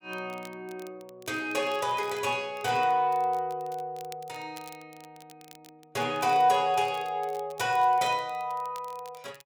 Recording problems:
crackle; vinyl, SNR 25 dB

